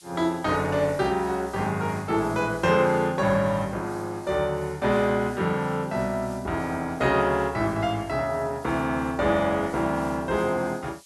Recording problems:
hiss; slope +6 dB per octave, SNR 24 dB

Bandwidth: 12 kHz